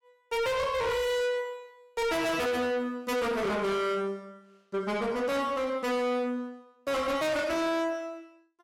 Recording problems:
distortion; soft clipping, signal-to-distortion ratio 6 dB

